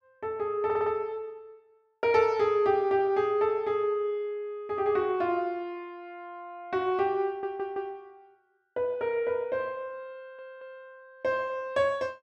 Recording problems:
audio stuttering; at 0.5 s, at 7.5 s and at 10 s

